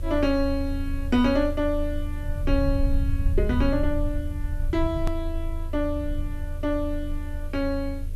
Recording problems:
hum; 50 Hz, harmonics up to 600 Hz, SNR 24 dB
hiss; slope 0 dB per octave, SNR 28 dB
rumble; below 80 Hz, strongest tone 26 Hz, SNR 3 dB
hard cut with a click; at 5 s

